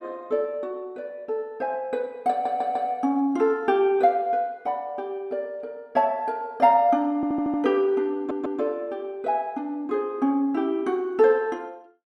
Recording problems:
audio stuttering; at 2.5 s, at 7 s and at 8 s

